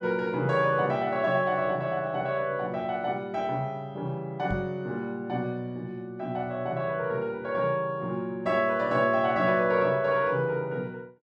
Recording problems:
microphone thump; at 4.5 s; peak -2 dB vs average level

